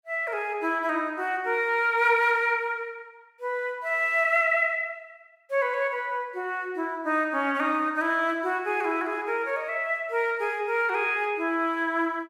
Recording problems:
none

